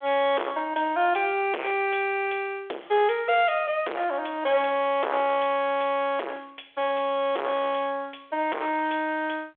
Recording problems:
phone line; 320 Hz to 3.6 kHz, G.726
distorted audio; hard clipping, uneven, signal-to-distortion ratio 5 dB

